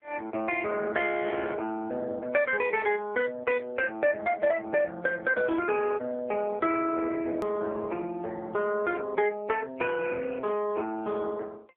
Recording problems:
telephone audio; 280 Hz to 3.1 kHz, AMR-NB
hard cut with a click; at 7.5 s

